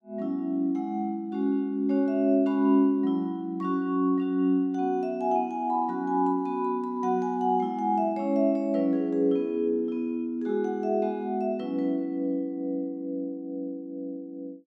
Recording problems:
none

